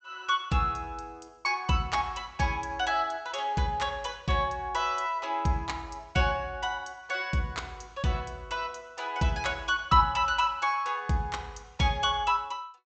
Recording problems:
treble missing; nothing above 8 kHz

